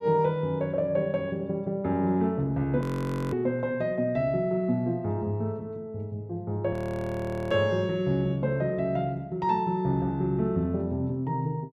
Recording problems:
audio freezing; at 3 s for 0.5 s and at 6.5 s for 1 s

